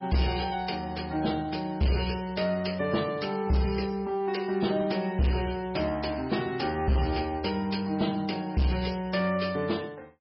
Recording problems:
lossy compression; MP3, log-spectral distance 5 dB, nothing above 5.2 kHz
distorted audio; hard clipping, signal-to-distortion ratio 11 dB

